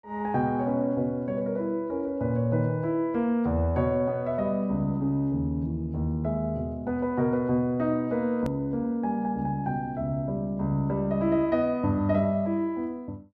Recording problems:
hard cut with a click; at 8.5 s

